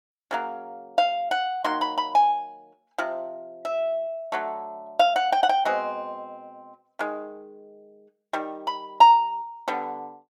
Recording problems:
none

